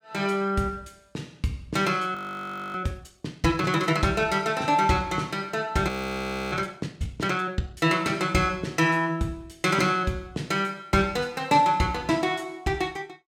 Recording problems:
audio freezing; at 2 s for 0.5 s and at 6 s for 0.5 s

